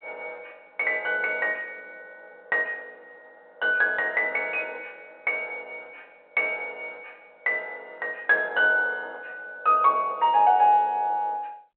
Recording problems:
phone line; 280 Hz to 3.3 kHz, G.726

